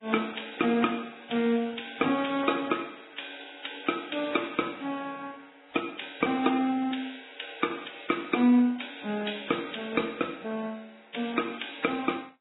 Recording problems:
lossy codec; AAC, then Vorbis, log-spectral distance 7 dB, nothing above 3.8 kHz

